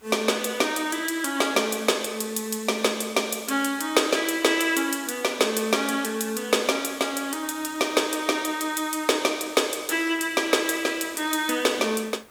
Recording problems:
background hiss; SNR 29 dB

